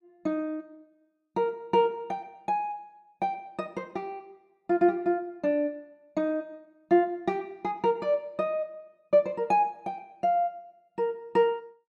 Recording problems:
none

